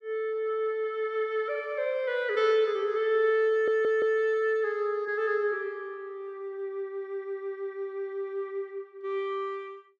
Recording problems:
audio stuttering; at 3.5 s

